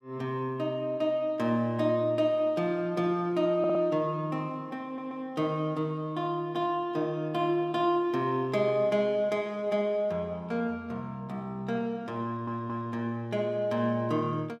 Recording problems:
audio stuttering; at 3.5 s, at 5 s and at 12 s

